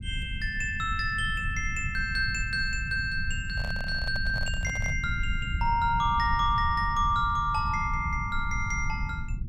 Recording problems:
low-frequency rumble; below 100 Hz, SNR 6 dB
handling noise; from 3.5 to 5 s; peak -8 dB vs average level

